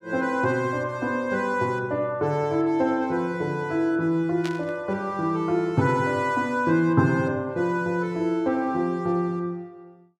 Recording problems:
static burst; at 4.5 s; peak -7 dB vs average level

